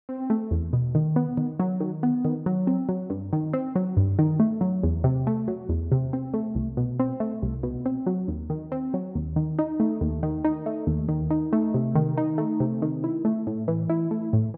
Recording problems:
none

